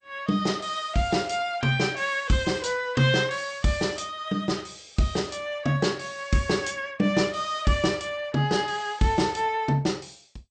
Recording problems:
lossy codec; MP2, log-spectral distance 5 dB, nothing above 8.5 kHz

